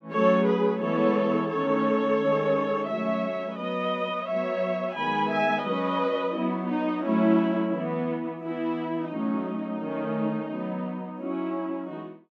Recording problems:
none

